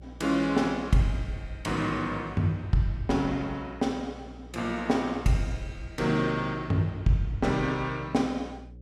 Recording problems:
hum; 60 Hz, harmonics up to 540 Hz, SNR 19 dB

